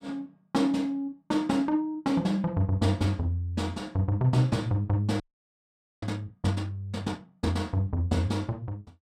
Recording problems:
frozen audio; at 5 s for 1 s

